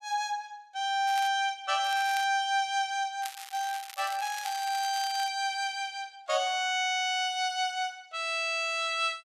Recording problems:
crackling; at 1 s, at 2 s and from 3 to 5.5 s; loose cable, SNR 14 dB

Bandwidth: 14 kHz